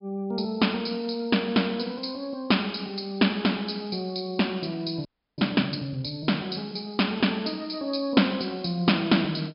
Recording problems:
treble missing; nothing above 5.5 kHz
audio freezing; at 5 s

